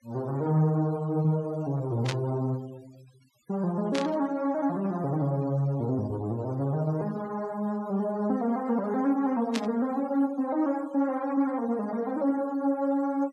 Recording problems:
denoising artefacts; signal-to-artefact ratio 25 dB
burst of static; at 2 s, at 4 s and at 9.5 s; peak -1 dB vs average level

